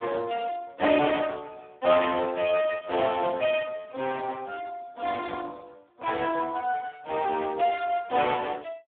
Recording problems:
telephone audio; 260 Hz to 2.6 kHz, Speex

